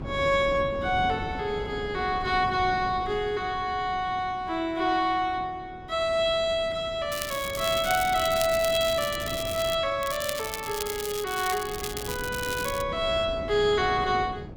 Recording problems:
wind noise; below 370 Hz, SNR 13 dB
crackling; from 7 to 9.5 s and from 10 to 13 s; loose cable, SNR 9 dB

